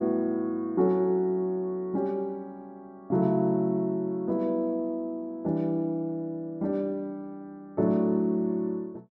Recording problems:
none

